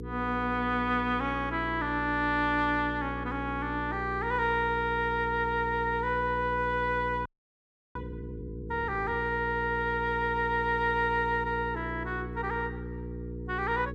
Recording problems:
hum; 60 Hz, harmonics up to 480 Hz, SNR 9 dB
audio freezing; at 7.5 s for 0.5 s

